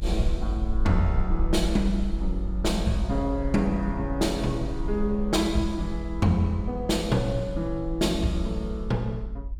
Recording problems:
low-frequency rumble; below 50 Hz, SNR 6 dB

